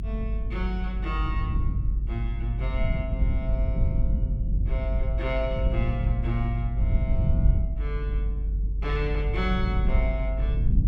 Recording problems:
rumble; below 78 Hz, strongest tone 48 Hz, SNR -6 dB

